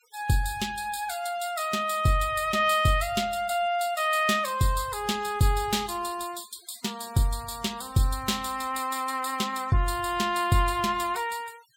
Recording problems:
noise reduction artefacts; signal-to-artefact ratio 21 dB

